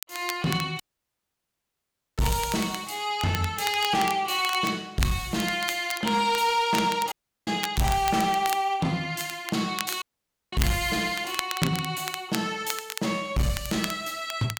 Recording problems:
distortion; hard clipping, uneven, signal-to-distortion ratio 11 dB
crackling; vinyl, SNR 10 dB
audio cutting out; at 1 s for 1.5 s, at 7 s and at 10 s for 0.5 s

